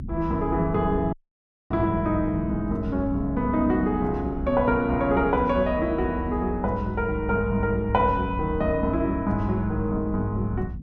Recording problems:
rumble; below 110 Hz, SNR 10 dB
dropout; at 1 s for 0.5 s

